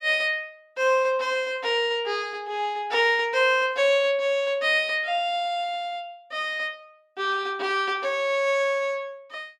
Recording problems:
none

